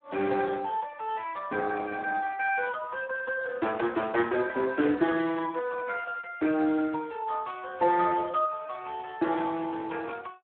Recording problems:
phone line; 240 Hz to 3.3 kHz, Speex

